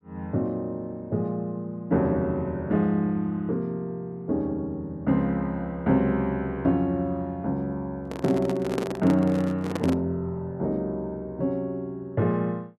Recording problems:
microphone handling noise; from 8 to 10 s; peak +2 dB vs average level

